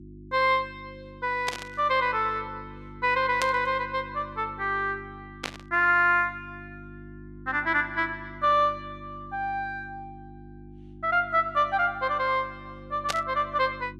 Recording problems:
hum; 50 Hz, harmonics up to 350 Hz, SNR 19 dB
static burst; 4 times, first at 1.5 s; peak +1 dB vs average level

